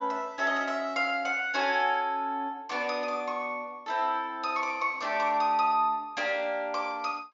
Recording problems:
treble missing; nothing above 7.3 kHz

